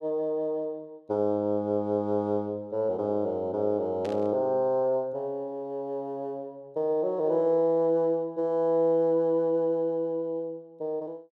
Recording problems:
burst of static; at 4 s; peak -13 dB vs average level

